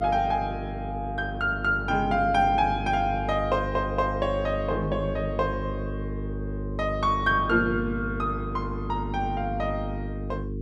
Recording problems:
hum; 50 Hz, harmonics up to 450 Hz, SNR 6 dB

